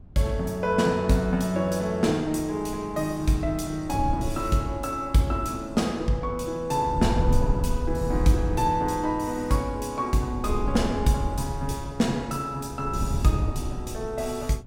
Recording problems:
wind on the microphone; below 110 Hz, SNR 6 dB

